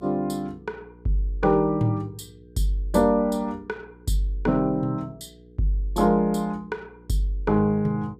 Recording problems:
hum; 60 Hz, harmonics up to 480 Hz, SNR 25 dB

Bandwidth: 15 kHz